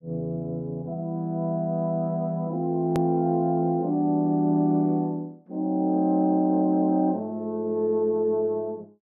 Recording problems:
edit click; at 3 s

